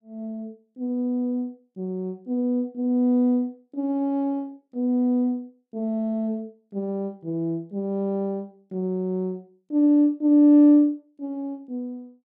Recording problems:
none

